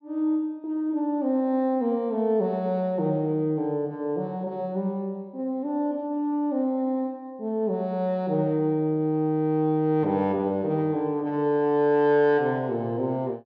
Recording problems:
treble cut off; nothing above 8 kHz

